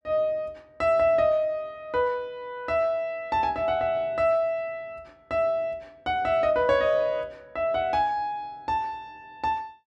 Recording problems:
none

